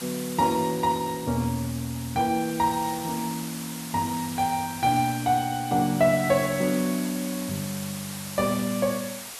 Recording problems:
background hiss; slope 0 dB per octave, SNR 11 dB

